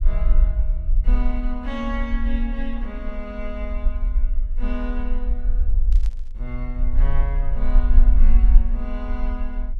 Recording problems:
low-frequency rumble; below 42 Hz, strongest tone 22 Hz, SNR -9 dB
burst of static; at 6 s; peak -9 dB vs average level

